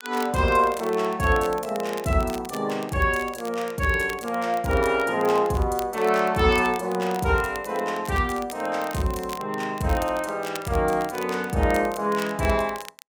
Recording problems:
crackling; vinyl, SNR 18 dB

